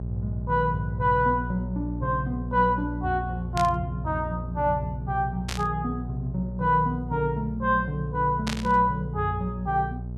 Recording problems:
electrical hum; 60 Hz, harmonics up to 600 Hz, SNR 7 dB
static burst; at 3.5 s, at 5.5 s and at 8.5 s; peak -2 dB vs average level

